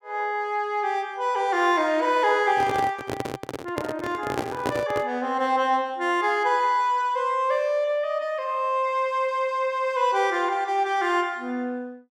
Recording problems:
handling noise; from 2.5 to 5 s; peak +1 dB vs average level

